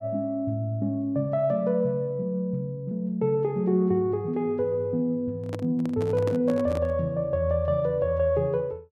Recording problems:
microphone handling noise; from 5.5 to 7 s; peak -4 dB vs average level

